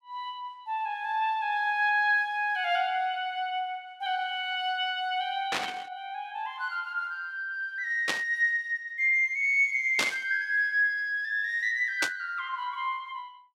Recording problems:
burst of static; 4 times, first at 5.5 s; peak +5 dB vs average level

